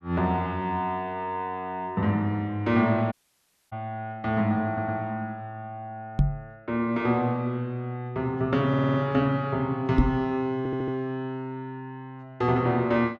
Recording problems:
dropout; at 3 s for 0.5 s
audio stuttering; at 4.5 s, at 8.5 s and at 11 s
microphone bump; at 6 s and at 10 s; peak +8 dB vs average level

